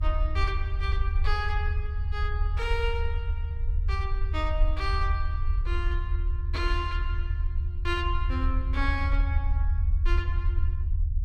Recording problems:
rumble; below 76 Hz, SNR -5 dB

